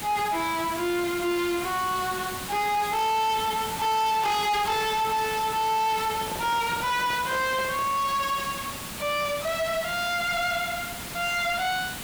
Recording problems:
distorted audio; soft clipping, signal-to-distortion ratio 8 dB
hiss; slope -2 dB per octave, SNR 9 dB
microphone handling noise; from 6 to 8 s; peak -7 dB vs average level

